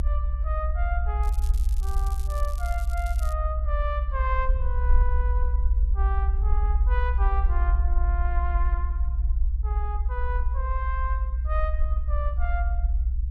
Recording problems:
low-frequency rumble; below 62 Hz, SNR -8 dB
crackle; from 1 to 3.5 s; loose cable, SNR 13 dB

